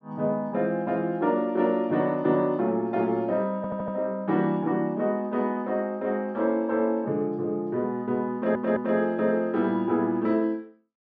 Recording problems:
audio stuttering; at 3.5 s and at 8.5 s

